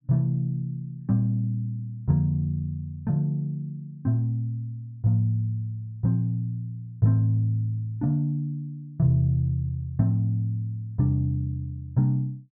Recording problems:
treble missing; nothing above 4 kHz

